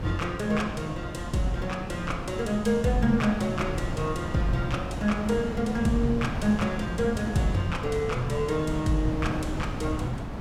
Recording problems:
wind on the microphone; below 330 Hz, SNR 6 dB

